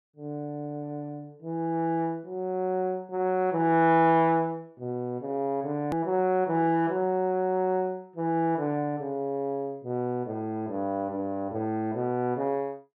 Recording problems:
edit click; at 6 s

